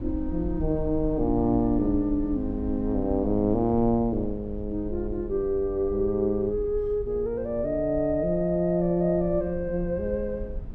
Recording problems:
rumble; below 72 Hz, SNR 12 dB

